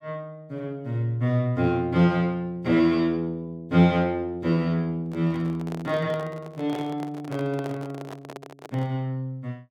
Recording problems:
microphone handling noise; from 5 to 9 s; peak -8 dB vs average level

